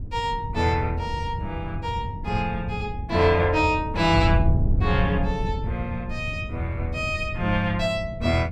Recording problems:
wind noise; below 110 Hz, SNR 4 dB

